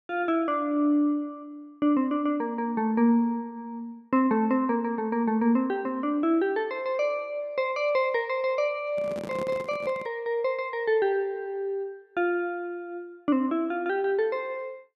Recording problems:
microphone handling noise; from 9 to 10 s; peak -7 dB vs average level

